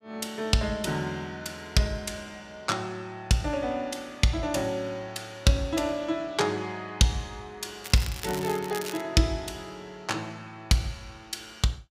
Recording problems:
crackle; from 8 to 9 s; loose cable, SNR 11 dB

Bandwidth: 15.5 kHz